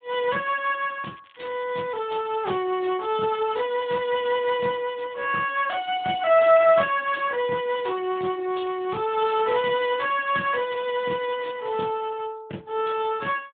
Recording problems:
telephone audio; 220 Hz to 3.6 kHz, Speex
crackle; at 1 s, at 4 s and from 7.5 to 9 s; loose cable, SNR 27 dB

